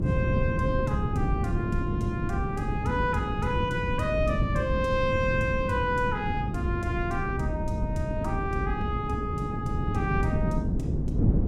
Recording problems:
wind on the microphone; below 210 Hz, SNR 0 dB

